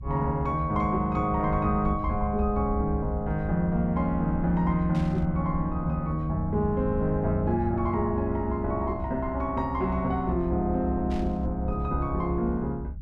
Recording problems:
low-frequency rumble; below 70 Hz, SNR 8 dB
burst of static; at 5 s and at 11 s; peak -13 dB vs average level

